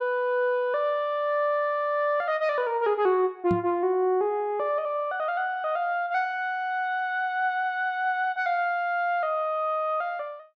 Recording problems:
knock on the microphone; at 3.5 s; peak +1 dB vs average level

